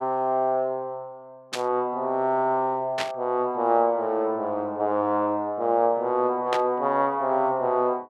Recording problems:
static burst; at 1.5 s, at 3 s and at 6.5 s; peak 0 dB vs average level

